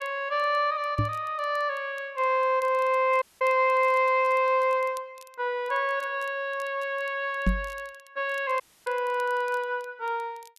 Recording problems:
crackle; vinyl, SNR 29 dB
microphone thump; at 1 s and at 7.5 s; peak +5 dB vs average level
dropout; at 3 s and at 8.5 s

